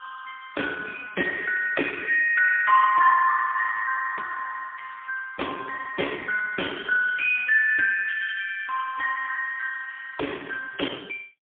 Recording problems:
telephone audio; 300 Hz to 3 kHz, AMR-NB, then MP3

